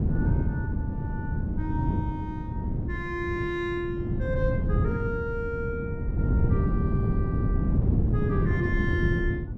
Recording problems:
wind on the microphone; below 180 Hz, SNR -6 dB

